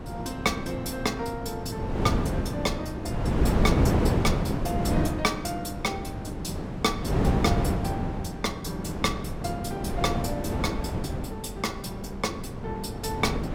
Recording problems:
wind noise; below 370 Hz, SNR -2 dB

